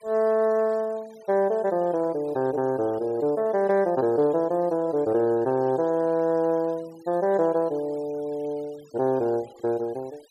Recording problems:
denoising artefacts; signal-to-artefact ratio 28 dB

